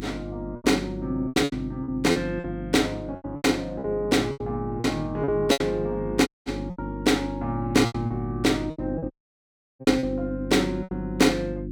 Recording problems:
hum; 50 Hz, harmonics up to 350 Hz, SNR 9 dB
packet loss; 12% of the sound replaced, filled with repeated pitch periods
audio cutting out; at 6.5 s and at 9 s for 0.5 s

